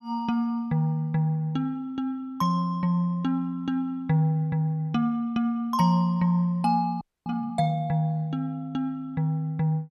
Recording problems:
frozen audio; at 7 s

